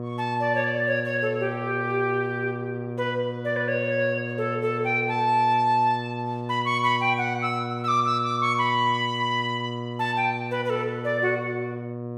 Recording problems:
hum; 60 Hz, harmonics up to 1.2 kHz, SNR 8 dB

